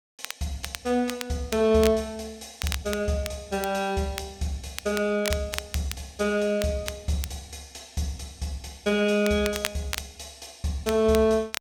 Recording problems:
crackling; vinyl, SNR 10 dB

